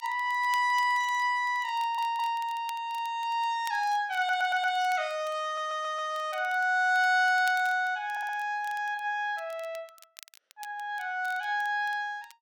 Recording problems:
crackle; vinyl, SNR 24 dB
audio stuttering; 4 times, first at 2 s

